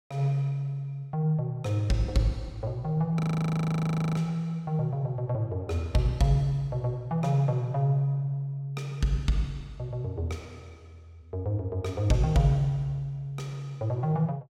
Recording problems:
audio freezing; at 3 s for 1 s

